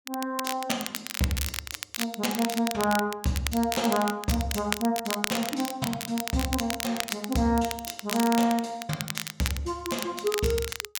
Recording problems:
crackling; vinyl, SNR 5 dB

